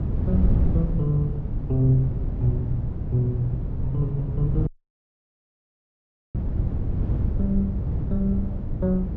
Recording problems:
low-pass filter; nothing above 8 kHz
hum; 60 Hz, harmonics up to 1.4 kHz, SNR 25 dB
wind noise; below 130 Hz, SNR 1 dB
audio cutting out; at 4.5 s for 1.5 s

